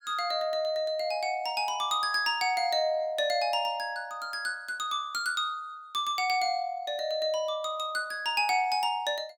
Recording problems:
none

